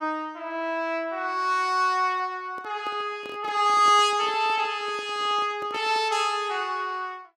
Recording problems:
microphone handling noise; from 2.5 to 6 s; peak -11 dB vs average level

